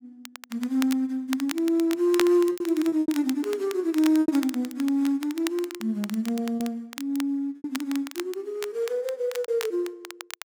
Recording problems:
crackle; vinyl, SNR 14 dB
lost packets; 6% of the sound replaced, filled with repeated pitch periods

